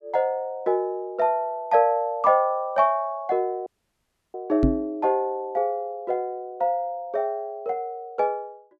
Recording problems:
audio cutting out; at 3.5 s for 0.5 s
knock on the microphone; at 4.5 s; peak +7 dB vs average level

